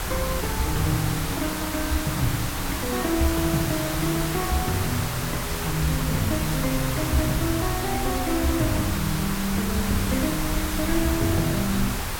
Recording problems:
background hiss; SNR 3 dB
low-frequency rumble; below 90 Hz, SNR 8 dB

